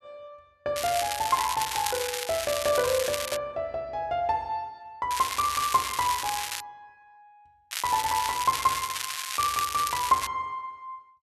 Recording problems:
crackle; from 1 to 3.5 s, from 5 to 6.5 s and from 7.5 to 10 s; loose cable, SNR 4 dB

